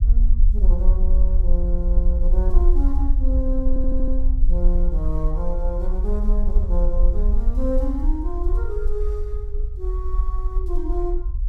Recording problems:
rumble; below 46 Hz, strongest tone 22 Hz, SNR -8 dB
audio stuttering; at 3.5 s

